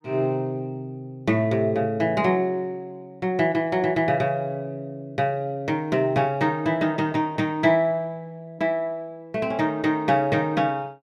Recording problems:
none

